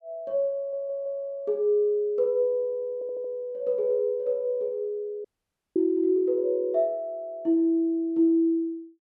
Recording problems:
stutter; at 0.5 s and at 3 s
audio cutting out; at 5.5 s for 0.5 s

